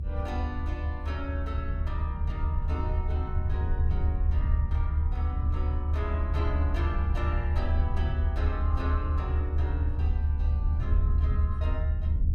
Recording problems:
rumble; below 78 Hz, strongest tone 74 Hz, SNR -10 dB

